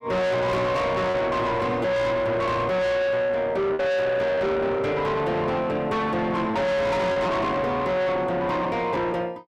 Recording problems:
distorted audio; soft clipping, signal-to-distortion ratio 5 dB
lost packets; 2% of the sound replaced, filled with repeated pitch periods

